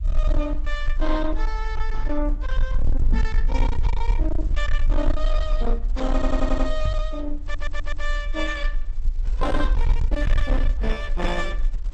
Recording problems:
codec artefacts; Opus, log-spectral distance 2 dB, nothing above 8 kHz
distorted audio; hard clipping, uneven, signal-to-distortion ratio 8 dB
rumble; below 40 Hz, strongest tone 22 Hz, SNR -3 dB
microphone thump; at 3 s and at 7 s; peak +10 dB vs average level
audio stuttering; at 6 s and at 7.5 s

